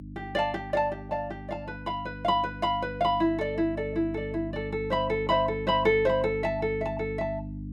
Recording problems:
hum; 50 Hz, harmonics up to 300 Hz, SNR 11 dB

